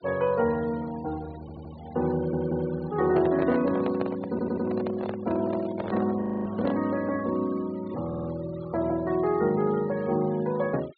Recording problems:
treble cut off; nothing above 4.5 kHz
denoising artefacts; signal-to-artefact ratio 21 dB
audio stuttering; 4 times, first at 1.5 s
microphone handling noise; from 3 to 7 s; peak -2 dB vs average level
audio freezing; at 6 s

